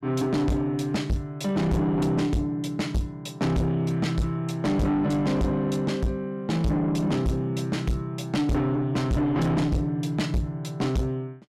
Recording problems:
distorted audio; soft clipping, signal-to-distortion ratio 6 dB

